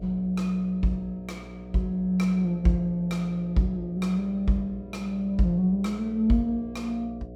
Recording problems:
hum; 60 Hz, harmonics up to 720 Hz, SNR 17 dB

